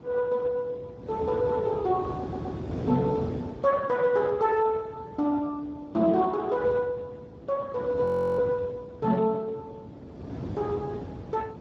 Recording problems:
codec artefacts; Speex, log-spectral distance 3 dB
wind noise; below 430 Hz, SNR 11 dB
stutter; at 2 s
frozen audio; at 8 s

